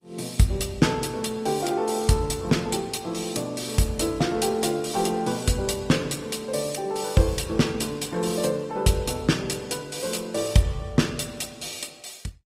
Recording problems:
lossy compression; Opus, log-spectral distance 5 dB, nothing above 15.5 kHz

